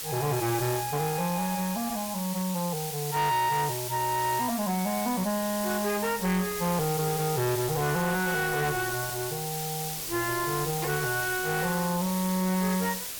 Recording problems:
distorted audio; hard clipping, uneven, signal-to-distortion ratio 10 dB
hiss; slope +2 dB per octave, SNR 5 dB
wind on the microphone; below 920 Hz, SNR 21 dB

